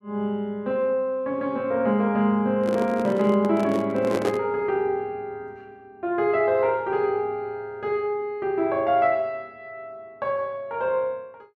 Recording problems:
microphone handling noise; from 2.5 to 4.5 s; peak +2 dB vs average level

